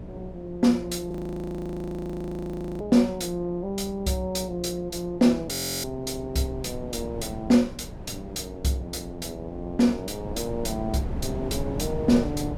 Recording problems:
hum; 60 Hz, harmonics up to 660 Hz, SNR 17 dB
wind on the microphone; below 290 Hz, SNR 12 dB
frozen audio; at 1 s for 1.5 s and at 5.5 s

